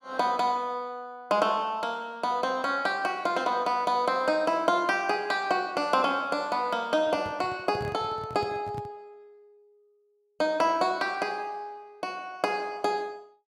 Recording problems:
handling noise; from 7 to 9 s; peak -6 dB vs average level

